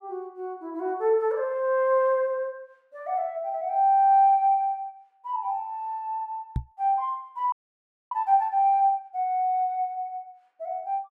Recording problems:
microphone bump; at 6.5 s; peak 0 dB vs average level
frozen audio; at 7.5 s for 0.5 s

